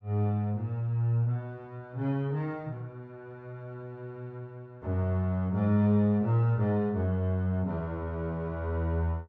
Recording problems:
none

